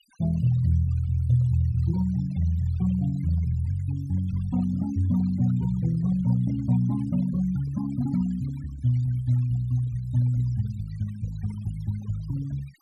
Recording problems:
denoising artefacts; signal-to-artefact ratio 22 dB

